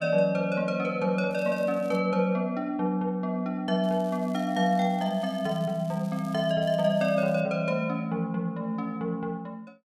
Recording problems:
crackling; at 1.5 s, from 4 to 6.5 s and at 6.5 s; loose cable, SNR 26 dB

